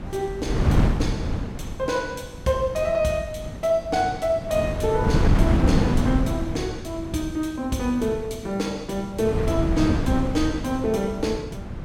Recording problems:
wind on the microphone; below 220 Hz, SNR 0 dB

